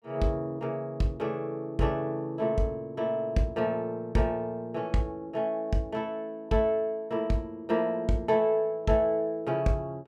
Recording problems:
none

